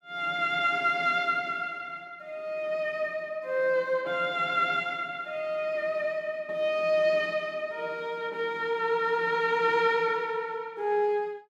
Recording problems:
none

